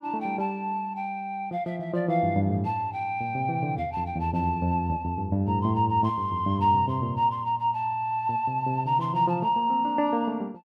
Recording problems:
none

